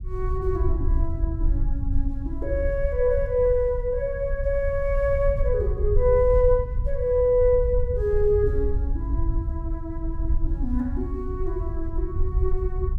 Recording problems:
rumble; below 64 Hz, SNR 4 dB

